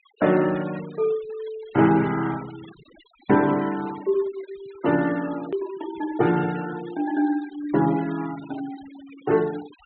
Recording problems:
treble cut off; nothing above 4 kHz
noise reduction artefacts; signal-to-artefact ratio 19 dB
edit click; at 5.5 s

